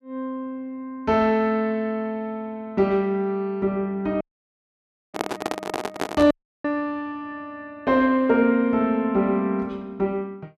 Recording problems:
audio cutting out; at 4 s for 1 s and at 6.5 s
handling noise; from 5 to 6.5 s; peak +2 dB vs average level

